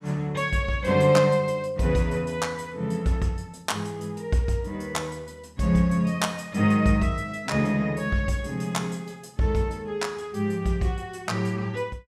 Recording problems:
none

